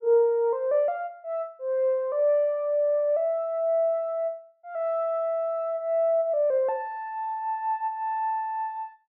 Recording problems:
low-pass filter; nothing above 5.5 kHz

